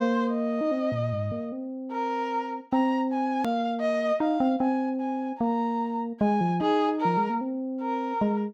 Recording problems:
edit click; at 3.5 s

